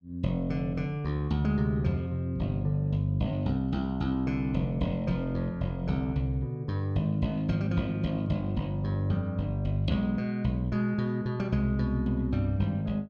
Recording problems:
none

